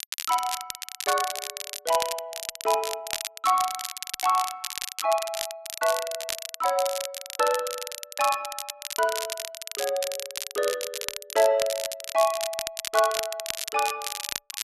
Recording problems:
crackle; vinyl, SNR 5 dB

